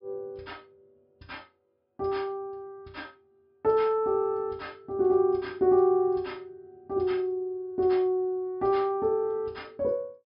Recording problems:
treble cut off; nothing above 5.4 kHz

